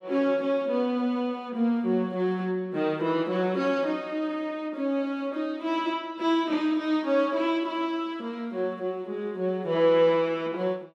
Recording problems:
none

